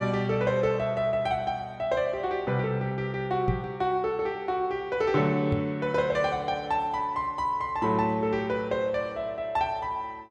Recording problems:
microphone bump; at 3.5 s and at 5.5 s; peak +4 dB vs average level

